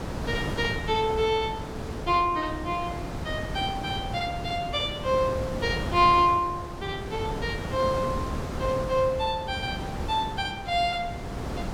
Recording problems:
wind noise; below 600 Hz, SNR 7 dB

